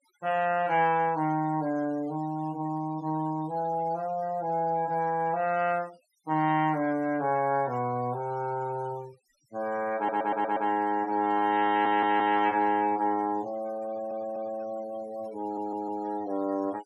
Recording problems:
noise reduction artefacts; signal-to-artefact ratio 23 dB
stutter; 4 times, first at 10 s

